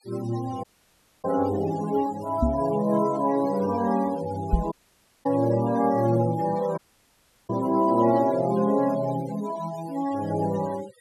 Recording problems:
denoising artefacts; signal-to-artefact ratio 18 dB
audio cutting out; at 0.5 s for 0.5 s, at 4.5 s for 0.5 s and at 7 s for 0.5 s
microphone thump; at 2.5 s and at 4.5 s; peak +6 dB vs average level

